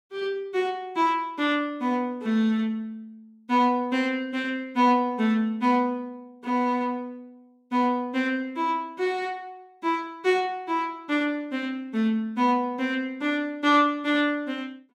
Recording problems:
none

